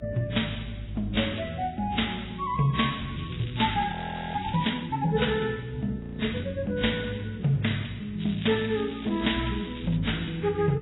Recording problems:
codec artefacts; Vorbis, then AAC, log-spectral distance 7 dB, nothing above 3.8 kHz
hum; 60 Hz, harmonics up to 360 Hz, SNR 19 dB
crackling; from 3 to 4.5 s and from 8 to 10 s; loose cable, SNR 16 dB
frozen audio; at 4 s and at 6 s

